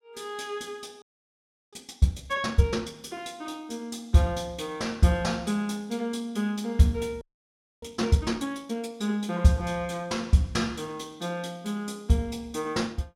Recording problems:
frozen audio; at 1 s for 0.5 s and at 7 s for 0.5 s

